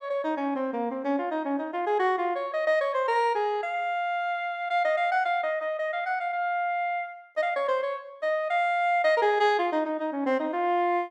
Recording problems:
none

